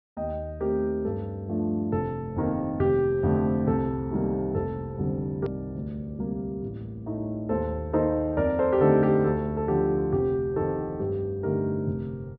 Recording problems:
treble missing; nothing above 5.5 kHz
edit click; at 5.5 s

